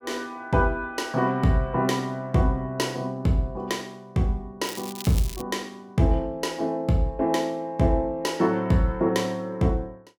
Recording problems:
crackle; at 4.5 s; loose cable, SNR 13 dB

